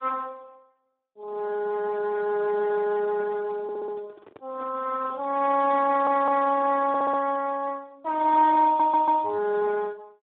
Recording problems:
telephone audio; 300 Hz to 2.1 kHz, Speex
handling noise; from 2.5 to 7.5 s; peak -17 dB vs average level
audio stuttering; 4 times, first at 3.5 s

